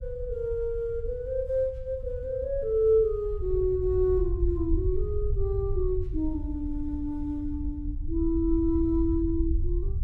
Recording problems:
low-frequency rumble; below 68 Hz, SNR 5 dB

